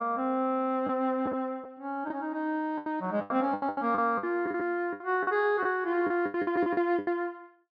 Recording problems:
lost packets; 13% of the sound replaced, filled with the last packet

